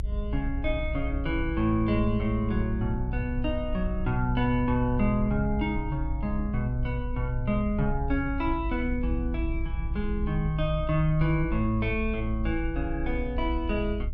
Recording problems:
low-frequency rumble; below 58 Hz, SNR 5 dB

